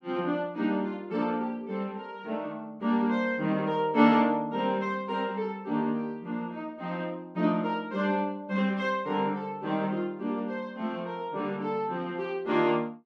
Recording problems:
none

